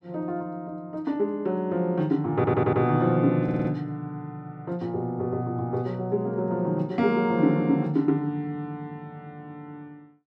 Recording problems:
stutter; at 2.5 s and at 3.5 s

